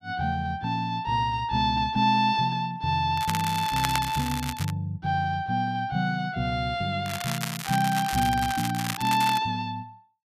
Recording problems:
crackle; from 3 to 4.5 s and from 7 to 9.5 s; loose cable, SNR 8 dB

